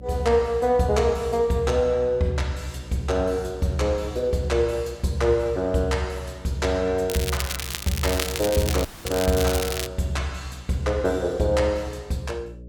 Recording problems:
hum; 60 Hz, harmonics up to 600 Hz, SNR 19 dB
crackle; from 7 to 10 s; loose cable, SNR 6 dB
dropout; at 9 s

